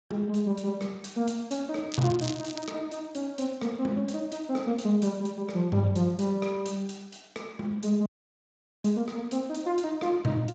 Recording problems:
codec artefacts; Speex, log-spectral distance 5 dB, nothing above 7.6 kHz
crackling; at 2 s; loose cable, SNR 10 dB
audio cutting out; at 8 s for 1 s

